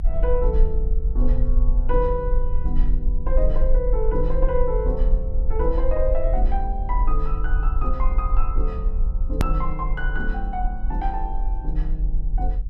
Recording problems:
rumble; below 42 Hz, strongest tone 22 Hz, SNR -4 dB
click at an edit; at 9.5 s

